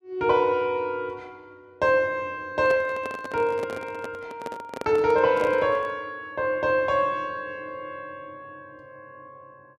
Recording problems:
microphone handling noise; from 2.5 to 6 s; peak -4 dB vs average level

